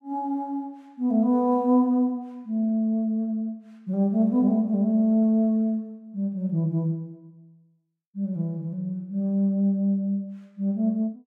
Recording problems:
none

